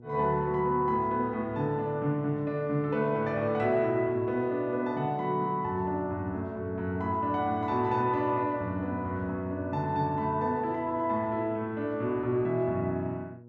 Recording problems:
hum; 60 Hz, harmonics up to 600 Hz, SNR 22 dB

